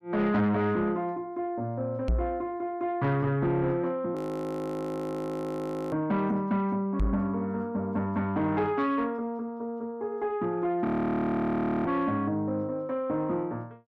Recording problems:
distorted audio; soft clipping, signal-to-distortion ratio 12 dB
microphone thump; at 2 s and at 7 s; peak +5 dB vs average level
audio freezing; at 4 s for 2 s and at 11 s for 1 s

